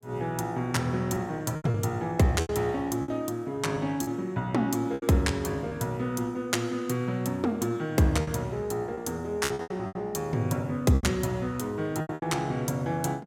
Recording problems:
lost packets; 8% of the sound replaced, filled with repeated pitch periods

